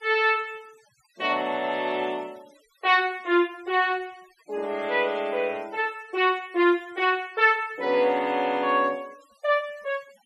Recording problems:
denoising artefacts; signal-to-artefact ratio 27 dB

